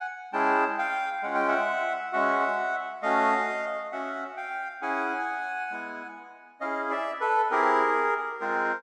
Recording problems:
none

